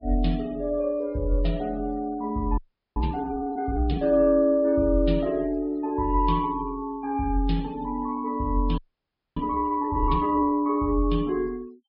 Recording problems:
treble cut off; nothing above 5.5 kHz
noise reduction artefacts; signal-to-artefact ratio 26 dB
frozen audio; at 2.5 s and at 9 s for 0.5 s

